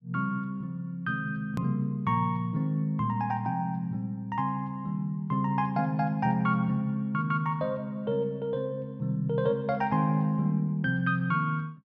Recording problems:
click at an edit; at 1.5 s

